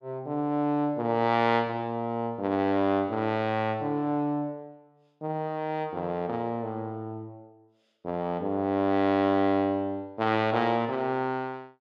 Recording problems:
none

